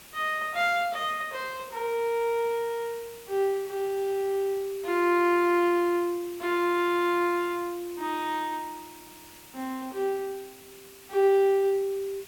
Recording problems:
background hiss; SNR 20 dB

